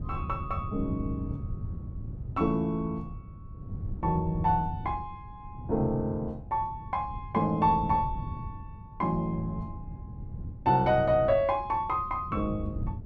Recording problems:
wind on the microphone; below 140 Hz, SNR 10 dB

